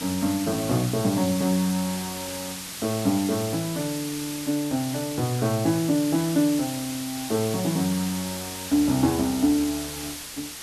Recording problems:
background hiss; slope +1 dB per octave, SNR 8 dB

